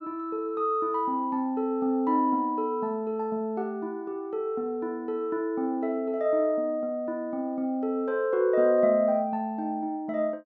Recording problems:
treble missing; nothing above 7.5 kHz

